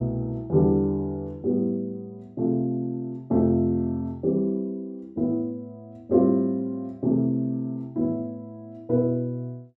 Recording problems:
none

